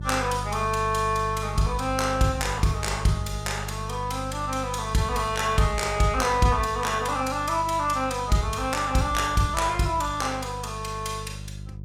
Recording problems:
hum; 50 Hz, harmonics up to 400 Hz, SNR 10 dB

